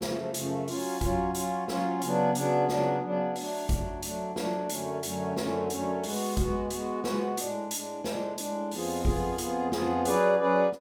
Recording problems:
none

